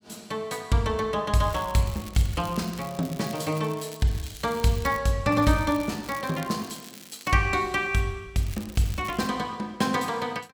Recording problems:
crackling; from 1.5 to 5 s, from 5.5 to 7.5 s and at 8.5 s; loose cable, SNR 18 dB

